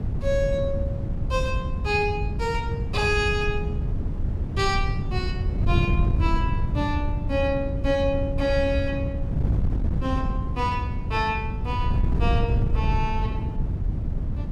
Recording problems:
wind noise; below 130 Hz, SNR -1 dB

